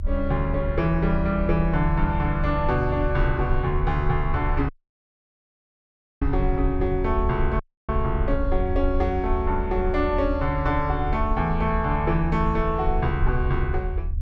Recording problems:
low-frequency rumble; below 74 Hz, SNR 4 dB
dropout; at 4.5 s for 1.5 s and at 7.5 s

